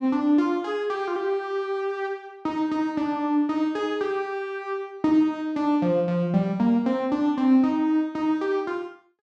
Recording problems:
none

